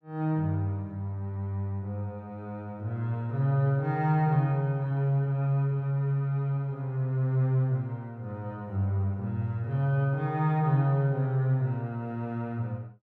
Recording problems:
none

